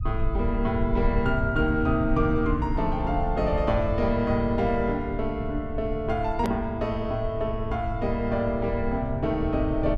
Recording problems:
low-frequency rumble; below 86 Hz, SNR 6 dB
hard cut with a click; at 6.5 s

